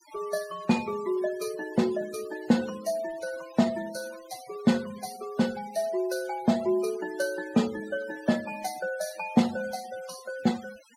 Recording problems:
denoising artefacts; signal-to-artefact ratio 18 dB

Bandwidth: 16.5 kHz